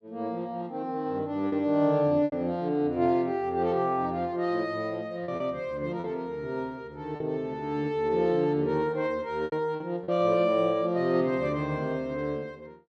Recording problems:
lost packets; 3% of the sound replaced, filled with repeated pitch periods

